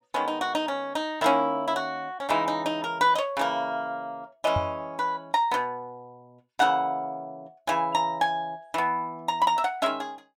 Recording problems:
microphone bump; at 4.5 s; peak 0 dB vs average level

